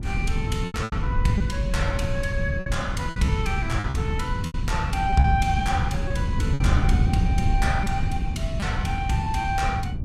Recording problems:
wind noise; below 130 Hz, SNR -1 dB
packet loss; 7% of the sound replaced, filled with repeated pitch periods

